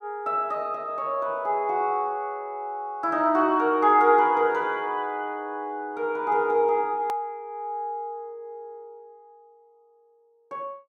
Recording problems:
hard cut with a click; at 7 s

